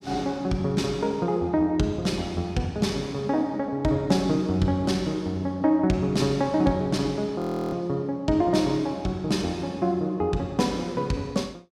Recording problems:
audio freezing; at 7.5 s

